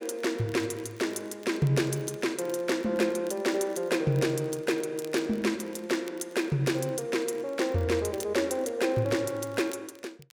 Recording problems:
crackling; vinyl, SNR 25 dB

